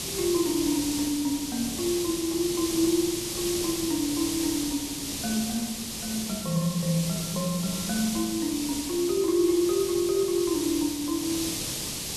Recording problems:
background hiss; SNR 4 dB

